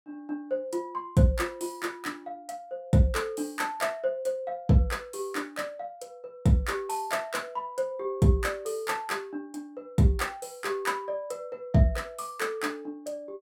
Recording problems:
none

